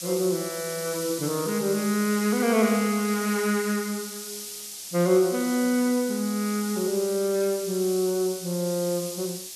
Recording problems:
background hiss; SNR 9 dB

